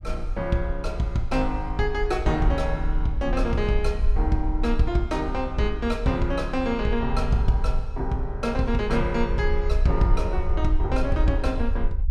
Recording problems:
low-frequency rumble; below 56 Hz, SNR 3 dB

